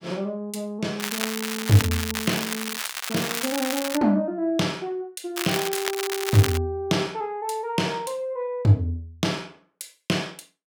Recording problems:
crackling; from 1 to 4 s and from 5.5 to 6.5 s; loose cable, SNR 3 dB

